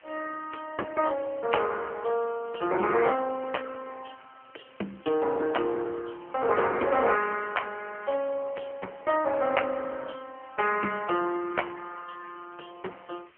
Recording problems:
phone line; 300 Hz to 3.1 kHz, AMR-NB
background hiss; SNR 29 dB

